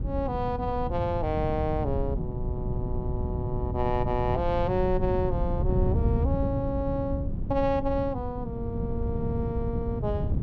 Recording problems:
wind noise; below 140 Hz, SNR 1 dB

